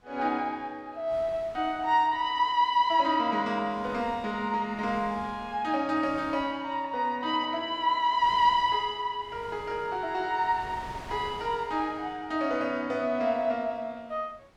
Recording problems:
wind noise; below 1.7 kHz, SNR 21 dB

